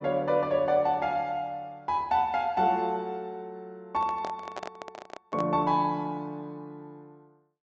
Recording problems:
treble missing; nothing above 8 kHz
microphone handling noise; from 4 to 5.5 s; peak -4 dB vs average level

